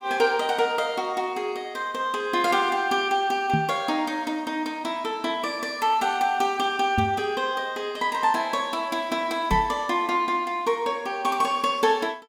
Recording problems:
microphone bump; at 3.5 s, at 7 s and at 9.5 s; peak +3 dB vs average level

